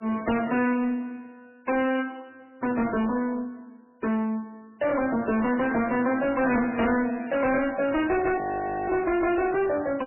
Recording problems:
lossy compression; MP3, log-spectral distance 3 dB, nothing above 2.8 kHz
distortion; soft clipping, signal-to-distortion ratio 6 dB
audio freezing; at 8.5 s for 0.5 s

